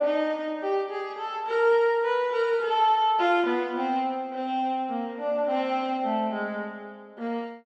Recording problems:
none

